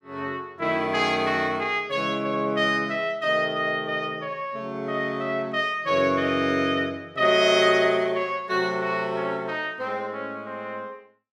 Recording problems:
none

